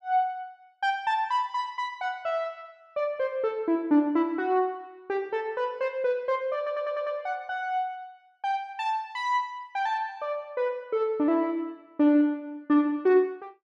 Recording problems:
stutter; at 6.5 s

